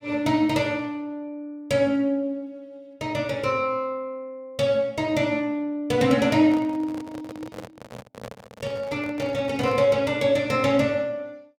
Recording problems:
microphone handling noise; from 6.5 to 10 s; peak -9 dB vs average level

